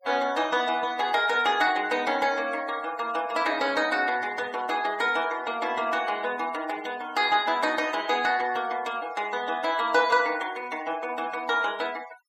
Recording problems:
noise reduction artefacts; signal-to-artefact ratio 20 dB

